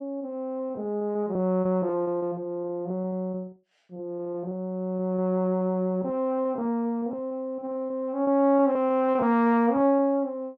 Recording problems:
lost packets; 16% of the sound replaced, filled with repeated pitch periods

